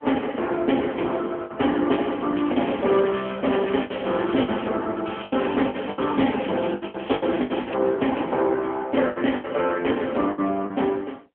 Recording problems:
telephone audio; 220 Hz to 3.3 kHz, AMR-NB
lost packets; 12% of the sound replaced, filled with the last packet
crackling; from 2.5 to 4.5 s and from 5 to 8 s; loose cable, SNR 16 dB

